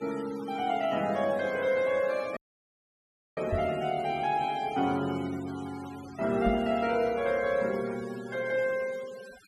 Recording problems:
denoising artefacts; signal-to-artefact ratio 18 dB
audio cutting out; at 2.5 s for 1 s
microphone bump; at 3.5 s and at 6.5 s; peak +1 dB vs average level

